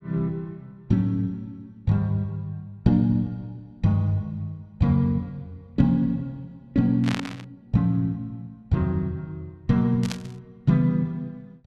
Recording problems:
burst of static; at 7 s and at 10 s; peak -1 dB vs average level

